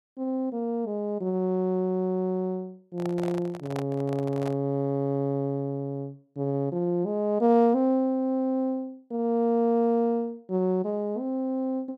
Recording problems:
microphone handling noise; from 3 to 4.5 s; peak -6 dB vs average level

